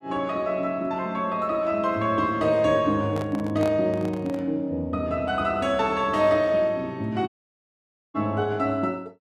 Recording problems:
handling noise; from 3 to 4.5 s; peak -5 dB vs average level
dropout; at 7.5 s for 1 s

